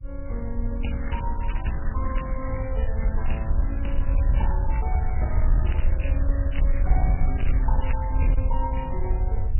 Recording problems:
lossy compression; MP3, log-spectral distance 3 dB, nothing above 2.9 kHz
distortion; hard clipping, uneven, signal-to-distortion ratio 11 dB
low-frequency rumble; below 64 Hz, SNR -6 dB
crackle; from 1 to 3.5 s and from 4 to 8 s; loose cable, SNR 10 dB

